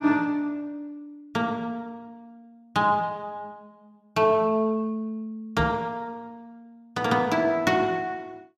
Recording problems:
knock on the microphone; at 5.5 s; peak +3 dB vs average level

